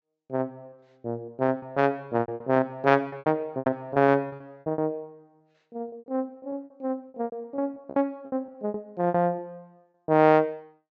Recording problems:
treble missing; nothing above 8 kHz
lost packets; 16% of the sound replaced, filled with repeated pitch periods

